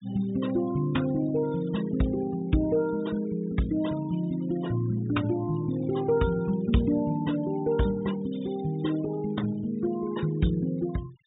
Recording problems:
low-pass filter; nothing above 4 kHz
denoising artefacts; signal-to-artefact ratio 20 dB

